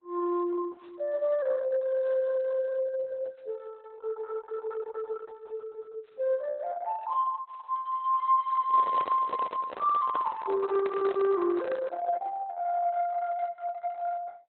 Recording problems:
codec artefacts; Opus, log-spectral distance 2 dB
microphone handling noise; from 8.5 to 12 s; peak -2 dB vs average level

